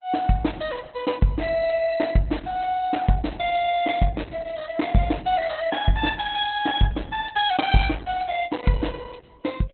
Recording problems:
lossy codec; Opus, log-spectral distance 4 dB, nothing above 3.6 kHz

